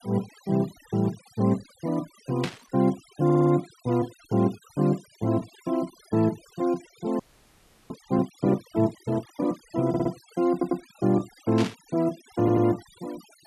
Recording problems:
noise reduction artefacts; signal-to-artefact ratio 22 dB
static burst; at 2.5 s and at 12 s; peak -2 dB vs average level
stutter; 4 times, first at 3.5 s
audio freezing; at 7 s for 0.5 s

